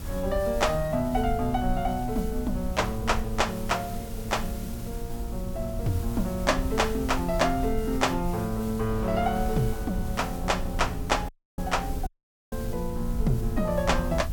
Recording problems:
electrical hum; 60 Hz, harmonics up to 660 Hz, SNR 19 dB
background hiss; slope -2 dB per octave, SNR 17 dB
rumble; below 70 Hz, SNR 8 dB
wind noise; below 850 Hz, SNR 20 dB
audio cutting out; at 11 s and at 12 s

